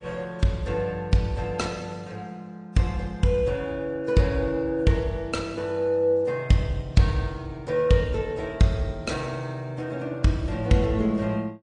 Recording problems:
lossy compression; MP3, then AAC, log-spectral distance 2 dB

